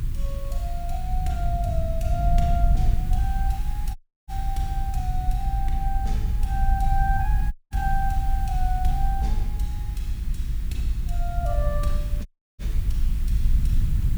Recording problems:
electrical hum; 60 Hz, harmonics up to 360 Hz, SNR 18 dB
hiss; SNR 15 dB
low-frequency rumble; below 58 Hz, strongest tone 26 Hz, SNR -6 dB
dropout; at 4 s, at 7.5 s and at 12 s

